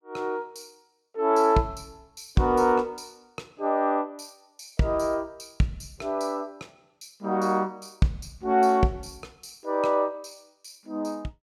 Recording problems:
none

